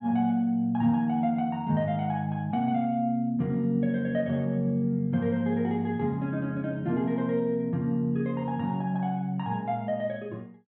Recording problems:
treble missing; nothing above 4 kHz

